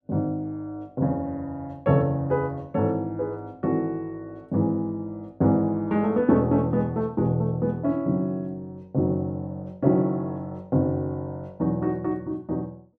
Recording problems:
none

